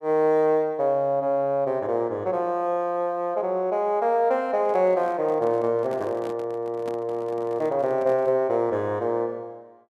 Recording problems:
handling noise; from 4.5 to 8.5 s; peak -11 dB vs average level

